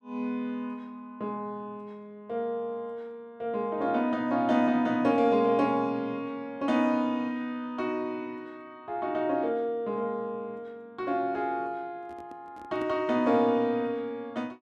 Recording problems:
microphone handling noise; from 12 to 13 s; peak -12 dB vs average level

